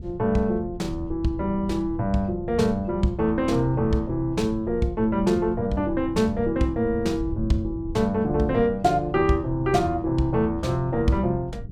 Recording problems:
wind on the microphone; below 120 Hz, SNR 12 dB

